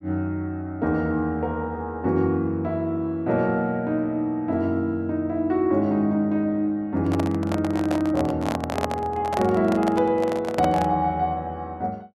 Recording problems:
microphone handling noise; from 7 to 11 s; peak +2 dB vs average level

